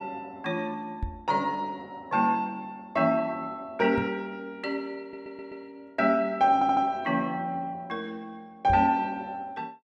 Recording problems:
microphone bump; at 1 s, at 4 s and at 8.5 s; peak -1 dB vs average level
audio stuttering; at 5 s and at 6.5 s

